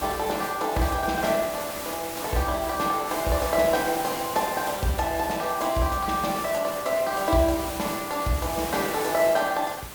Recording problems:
background hiss; slope -3 dB per octave, SNR 9 dB

